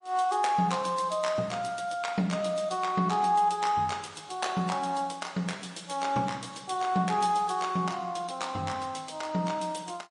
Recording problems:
codec artefacts; MP3, log-spectral distance 4 dB

